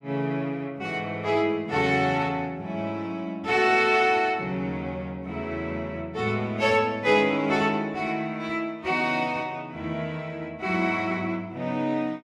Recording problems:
none

